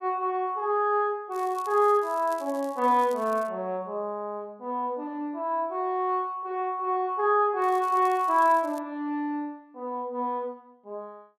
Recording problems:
crackle; from 1.5 to 3.5 s and from 7.5 to 9 s; loose cable, SNR 24 dB

